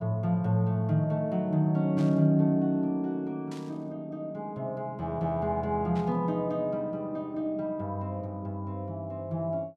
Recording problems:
burst of static; at 2 s, at 3.5 s and at 6 s; peak -15 dB vs average level

